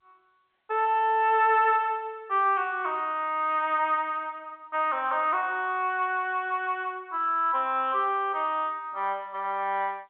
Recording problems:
telephone audio; 320 Hz to 3.7 kHz, G.711

